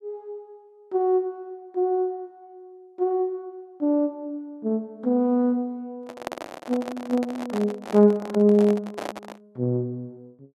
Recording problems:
handling noise; from 6 to 9.5 s; peak -3 dB vs average level

